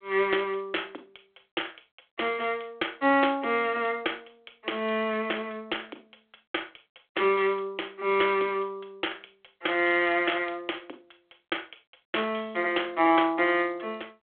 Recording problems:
phone line; 280 Hz to 3.4 kHz, G.726

